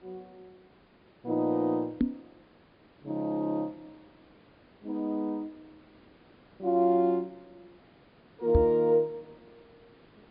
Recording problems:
low-pass filter; nothing above 5 kHz
hiss; SNR 30 dB
knock on the microphone; at 2 s and at 8.5 s; peak +6 dB vs average level

